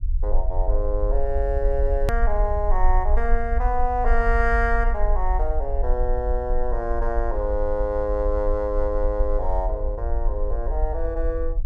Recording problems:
low-frequency rumble; below 46 Hz, strongest tone 20 Hz, SNR 0 dB
click at an edit; at 2 s

